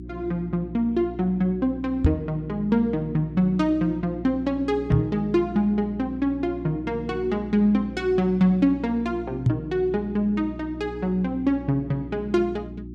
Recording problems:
mains hum; 60 Hz, harmonics up to 360 Hz, SNR 13 dB
microphone thump; at 2 s, at 5 s and at 9.5 s; peak +9 dB vs average level

